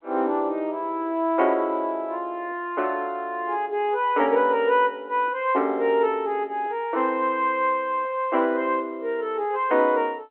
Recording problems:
telephone audio; 240 Hz to 3.3 kHz, G.711

